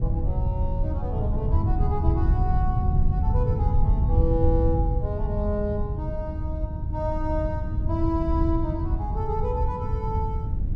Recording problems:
low-frequency rumble; below 76 Hz, SNR 6 dB
wind noise; below 110 Hz, SNR -4 dB

